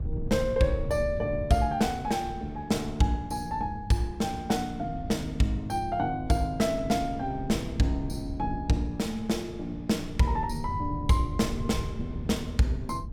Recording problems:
wind on the microphone; below 120 Hz, SNR 10 dB

